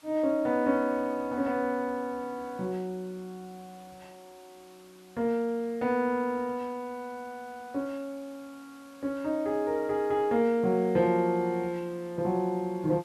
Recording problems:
hiss; SNR 27 dB

